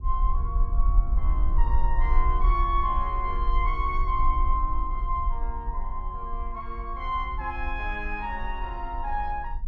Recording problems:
low-frequency rumble; below 46 Hz, SNR -1 dB

